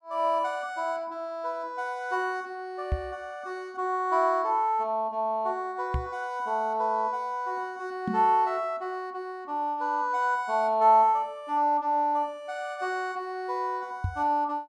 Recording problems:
microphone bump; 4 times, first at 3 s; peak +3 dB vs average level

